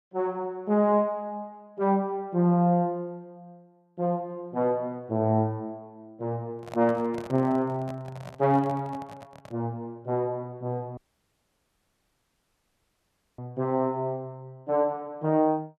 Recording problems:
microphone handling noise; from 6.5 to 9.5 s; peak -7 dB vs average level
dropout; at 11 s for 2.5 s

